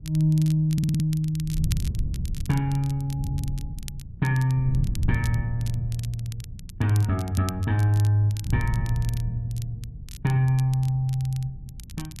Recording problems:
wind noise; below 120 Hz, SNR 9 dB
crackling; vinyl, SNR 19 dB
stutter; at 0.5 s

